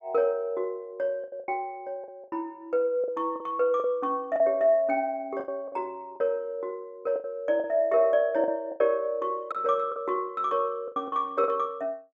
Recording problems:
lost packets; 9% of the sound replaced, filled with the last packet

